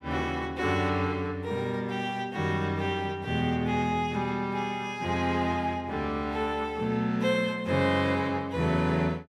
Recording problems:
none

